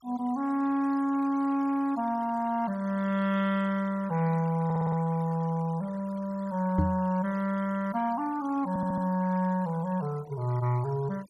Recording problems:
denoising artefacts; signal-to-artefact ratio 21 dB
audio stuttering; at 4.5 s and at 8.5 s
knock on the microphone; at 7 s; peak +5 dB vs average level

